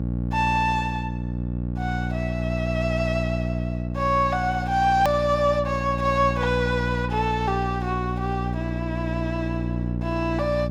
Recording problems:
hum; 60 Hz, harmonics up to 600 Hz, SNR 3 dB
hard cut with a click; at 5 s

